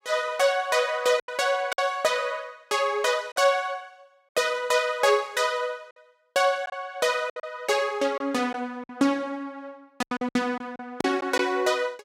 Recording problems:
lost packets; 6% of the sound replaced, filled with silence

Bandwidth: 16 kHz